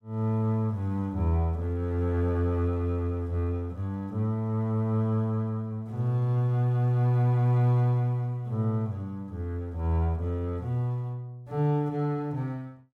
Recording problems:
none

